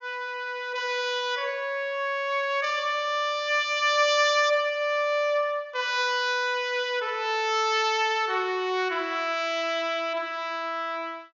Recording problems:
low-pass filter; nothing above 7.1 kHz

